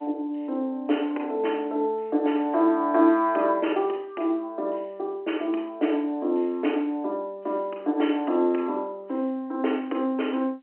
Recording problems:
telephone audio; 240 Hz to 3.1 kHz, G.711

